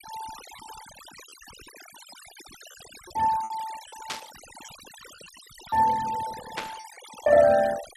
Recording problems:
noise reduction artefacts; signal-to-artefact ratio 18 dB
lost packets; 6% of the sound replaced, filled with repeated pitch periods
static burst; at 4 s and at 6.5 s; peak -4 dB vs average level

